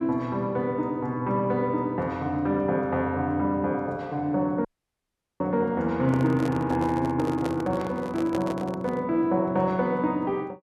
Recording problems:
dropout; at 4.5 s for 1 s
microphone handling noise; from 6 to 9 s; peak -2 dB vs average level

